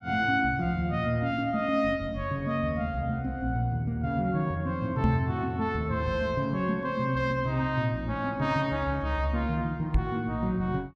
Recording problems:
microphone bump; at 5 s and at 10 s; peak +7 dB vs average level

